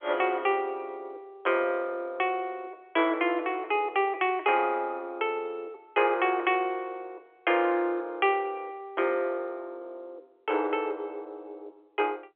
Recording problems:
telephone audio; 280 Hz to 3.4 kHz, G.711

